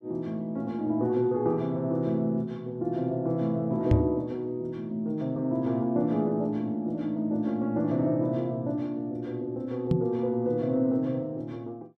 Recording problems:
microphone thump; at 4 s and at 10 s; peak +8 dB vs average level

